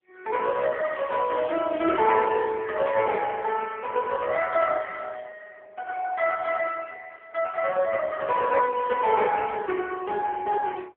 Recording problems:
phone line; 220 Hz to 2.2 kHz, AMR-NB

